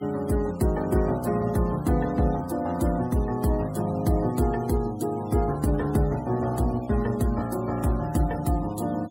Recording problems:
noise reduction artefacts; signal-to-artefact ratio 22 dB

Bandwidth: 16.5 kHz